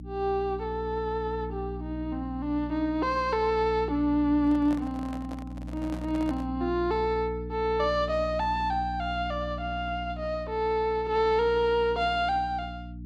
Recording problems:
electrical hum; 60 Hz, harmonics up to 300 Hz, SNR 10 dB
microphone handling noise; from 4.5 to 6.5 s; peak -8 dB vs average level

